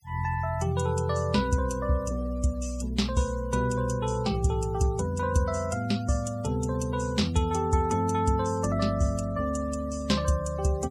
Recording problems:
denoising artefacts; signal-to-artefact ratio 21 dB

